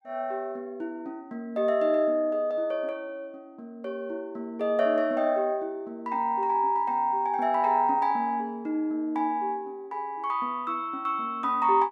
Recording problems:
none

